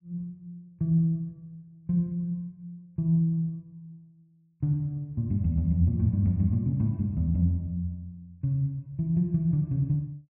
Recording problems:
none

